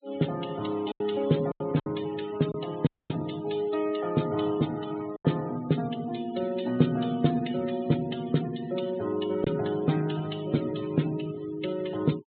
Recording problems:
treble cut off; nothing above 4 kHz
denoising artefacts; signal-to-artefact ratio 17 dB
lost packets; 3% of the sound replaced, filled with silence
dropout; at 3 s

